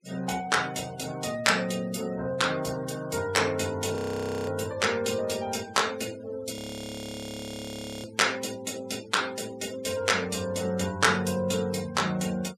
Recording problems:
denoising artefacts; signal-to-artefact ratio 19 dB
audio freezing; at 4 s for 0.5 s and at 6.5 s for 1.5 s

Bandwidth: 14.5 kHz